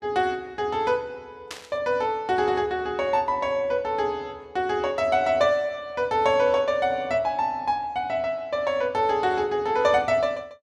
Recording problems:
burst of static; at 1.5 s; peak -6 dB vs average level

